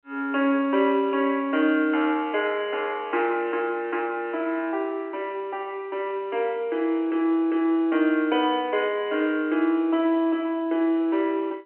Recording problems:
telephone audio; 240 Hz to 3.2 kHz, G.711

